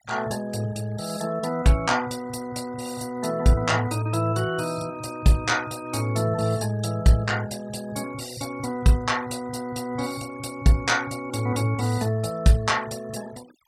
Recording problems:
denoising artefacts; signal-to-artefact ratio 19 dB

